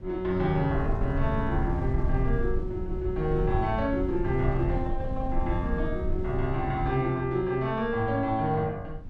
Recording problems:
wind on the microphone; below 92 Hz, SNR 4 dB

